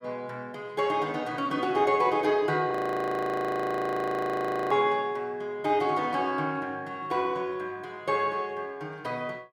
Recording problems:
frozen audio; at 2.5 s for 2 s

